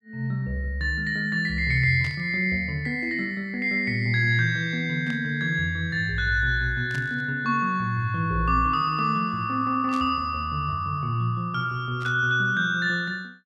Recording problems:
burst of static; 5 times, first at 2 s; peak -12 dB vs average level

